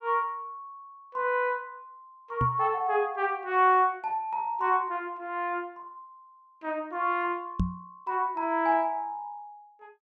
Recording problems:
knock on the microphone; at 2.5 s and at 7.5 s; peak +4 dB vs average level

